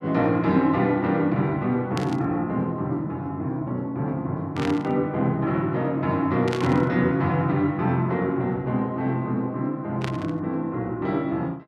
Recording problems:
burst of static; 4 times, first at 2 s; peak -4 dB vs average level

